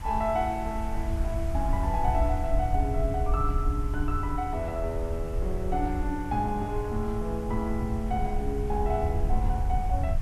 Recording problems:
background hiss; SNR 18 dB
wind on the microphone; below 70 Hz, SNR 1 dB

